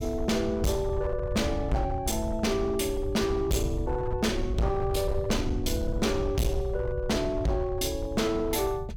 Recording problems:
distorted audio; hard clipping, uneven, signal-to-distortion ratio 6 dB
rumble; below 100 Hz, SNR 7 dB

